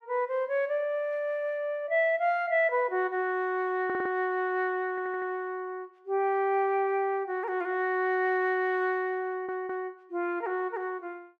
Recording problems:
audio stuttering; at 4 s, at 5 s and at 9.5 s

